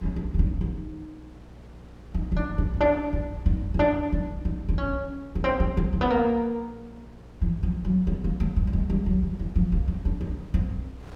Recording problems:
hum; 60 Hz, harmonics up to 540 Hz, SNR 22 dB
wind noise; below 610 Hz, SNR 24 dB

